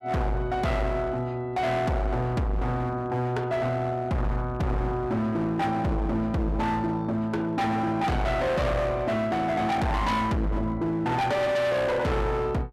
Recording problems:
distortion; hard clipping, signal-to-distortion ratio 6 dB

